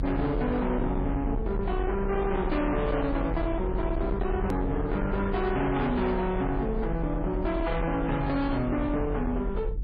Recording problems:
codec artefacts; MP3, log-spectral distance 2 dB, nothing above 13.1 kHz
distortion; hard clipping, uneven, signal-to-distortion ratio 7 dB
low-frequency rumble; below 140 Hz, SNR 5 dB
hard cut with a click; at 4.5 s

